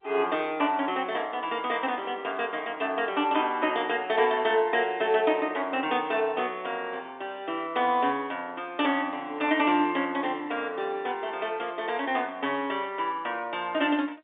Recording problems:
phone line; 240 Hz to 3.6 kHz, G.711

